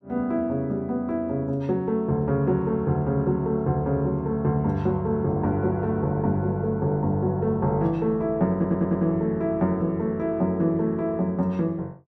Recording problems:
stutter; at 8.5 s

